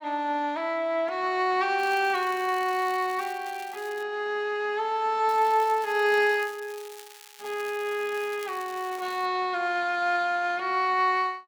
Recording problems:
crackle; from 2 to 4 s and from 5.5 to 9.5 s; loose cable, SNR 20 dB

